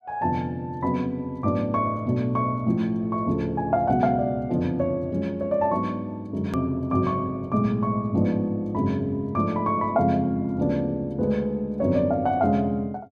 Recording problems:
hard cut with a click; at 6.5 s

